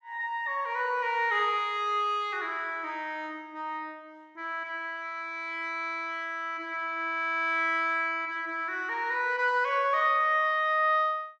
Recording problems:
none

